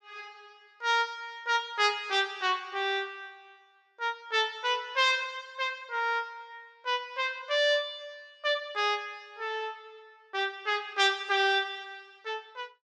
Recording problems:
none

